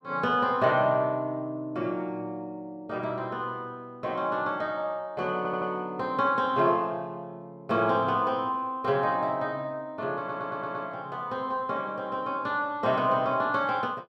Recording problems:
stutter; at 5.5 s and at 10 s

